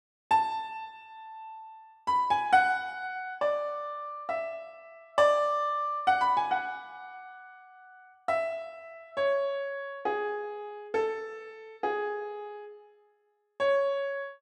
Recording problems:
none

